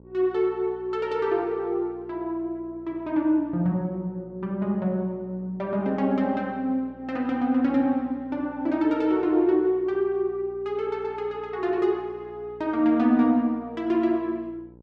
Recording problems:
electrical hum; 60 Hz, harmonics up to 1 kHz, SNR 25 dB

